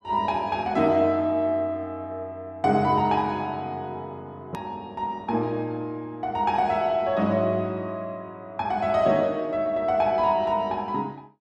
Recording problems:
hard cut with a click; at 4.5 s

